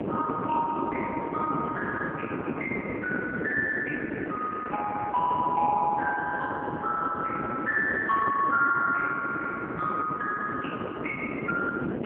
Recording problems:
phone line; 170 Hz to 2.4 kHz, AMR-NB
wind on the microphone; below 500 Hz, SNR 5 dB

